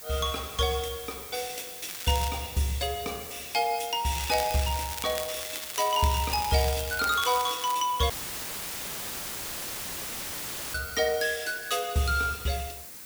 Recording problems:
hiss; slope -1 dB per octave, SNR 11 dB
crackling; at 2 s and from 4 to 8 s; loose cable, SNR 8 dB
dropout; at 8 s for 2.5 s; filled with static

